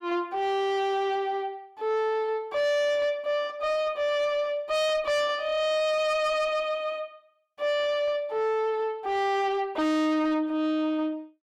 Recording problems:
distortion; soft clipping, signal-to-distortion ratio 7 dB

